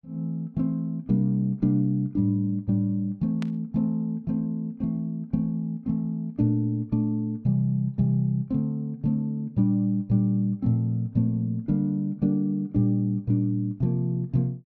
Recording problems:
burst of static; at 3.5 s; peak -11 dB vs average level

